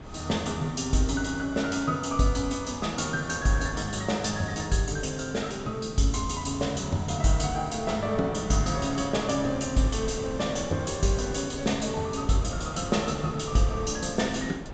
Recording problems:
low-pass filter; nothing above 8 kHz
wind on the microphone; below 600 Hz, SNR 13 dB

